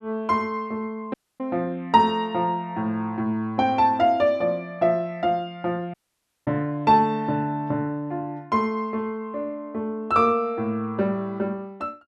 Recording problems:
audio cutting out; at 1 s and at 6 s for 0.5 s

